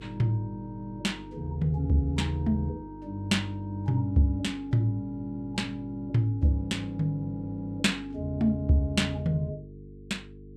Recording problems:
hum; 50 Hz, harmonics up to 450 Hz, SNR 17 dB

